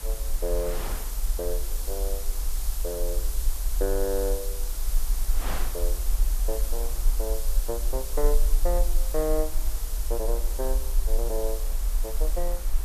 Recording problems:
background hiss; SNR 4 dB
rumble; below 40 Hz, strongest tone 20 Hz, SNR -3 dB
wind on the microphone; below 2 kHz, SNR 12 dB

